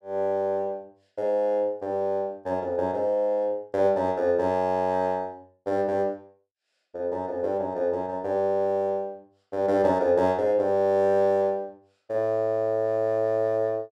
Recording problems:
none

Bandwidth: 12.5 kHz